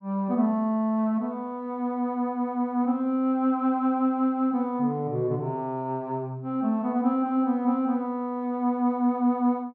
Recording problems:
none

